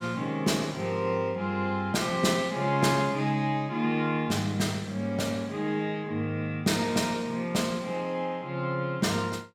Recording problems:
none

